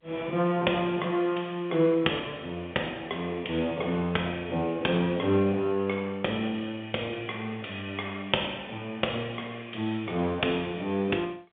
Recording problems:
telephone audio; 220 Hz to 3.5 kHz, G.711

